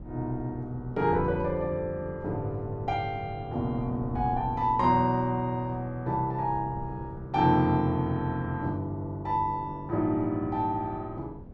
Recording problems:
wind noise; below 230 Hz, SNR 15 dB

